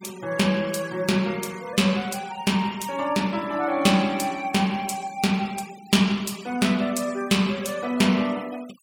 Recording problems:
noise reduction artefacts; signal-to-artefact ratio 20 dB

